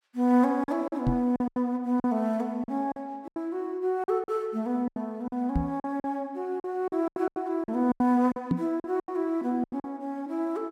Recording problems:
packet loss; 13% of the sound replaced, filled with silence
microphone bump; at 1 s, at 5.5 s and at 8.5 s; peak +5 dB vs average level

